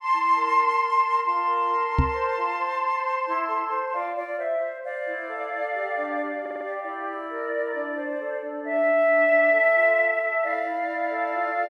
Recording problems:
knock on the microphone; at 2 s; peak +6 dB vs average level
audio stuttering; at 6.5 s

